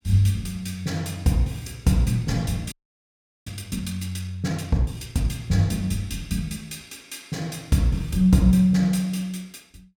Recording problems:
frozen audio; at 2.5 s for 0.5 s

